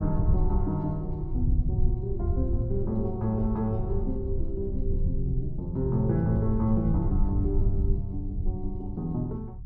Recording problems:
low-frequency rumble; below 86 Hz, SNR 1 dB

